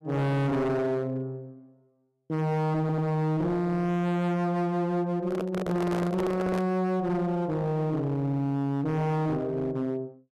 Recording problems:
distortion; hard clipping, uneven, signal-to-distortion ratio 7 dB
stutter; at 3 s
microphone handling noise; from 5 to 6.5 s; peak +1 dB vs average level

